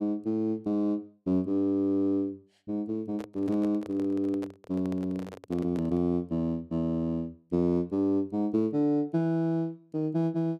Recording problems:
handling noise; from 3 to 6 s; peak -8 dB vs average level

